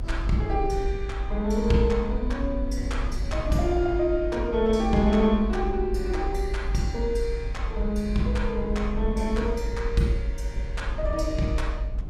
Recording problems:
low-frequency rumble; below 54 Hz, SNR 4 dB

